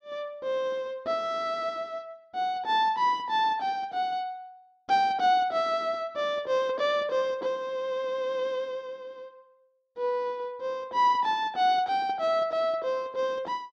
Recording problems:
none

